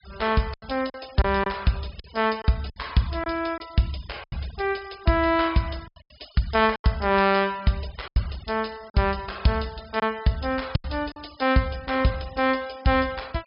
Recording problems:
treble missing; nothing above 5.5 kHz
noise reduction artefacts; signal-to-artefact ratio 22 dB
lost packets; 7% of the sound replaced, filled with silence

